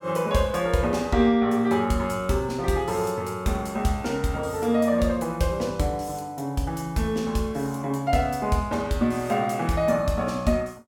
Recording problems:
none

